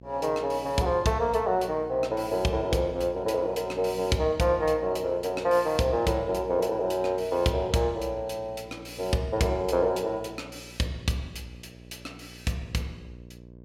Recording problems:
hum; 60 Hz, harmonics up to 660 Hz, SNR 20 dB

